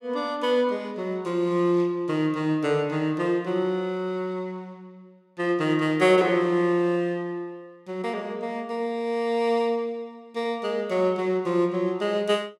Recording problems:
none

